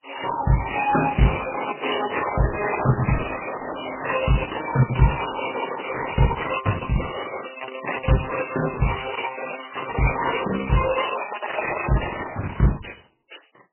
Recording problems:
lossy compression; Opus, then MP3, log-spectral distance 9 dB, nothing above 3 kHz

